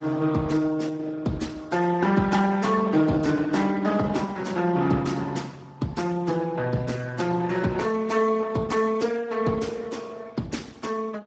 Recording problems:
lossy codec; Opus, then Speex, log-spectral distance 4 dB, nothing above 7.6 kHz

